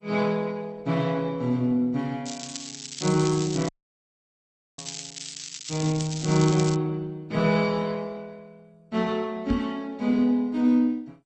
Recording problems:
lossy codec; MP2, then Opus, log-spectral distance 9 dB, nothing above 8 kHz
crackle; from 2.5 to 7 s; loose cable, SNR 12 dB
dropout; at 3.5 s for 1 s
microphone thump; at 9.5 s; peak +2 dB vs average level

